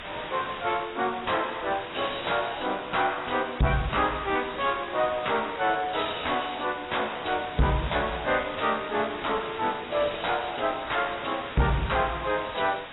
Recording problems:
lossy codec; AAC, log-spectral distance 17 dB, nothing above 3.9 kHz
distorted audio; soft clipping, signal-to-distortion ratio 5 dB
hiss; SNR 9 dB

